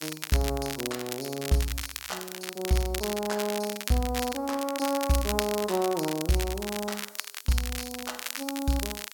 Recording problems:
background hiss; slope +6 dB per octave, SNR 21 dB
crackling; vinyl, SNR 5 dB

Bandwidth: 17 kHz